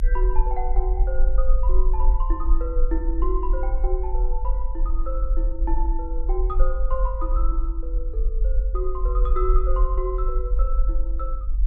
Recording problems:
low-frequency rumble; below 44 Hz, SNR -7 dB

